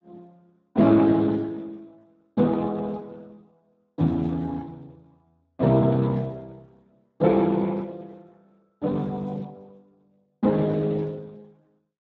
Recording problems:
lossy codec; Speex, log-spectral distance 3 dB

